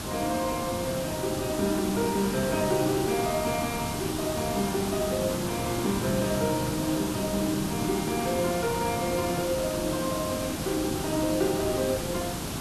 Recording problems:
hum; 50 Hz, harmonics up to 1 kHz, SNR 22 dB
background hiss; SNR 4 dB

